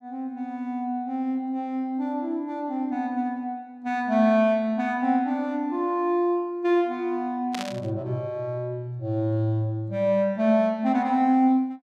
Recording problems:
burst of static; at 7.5 s; peak -4 dB vs average level

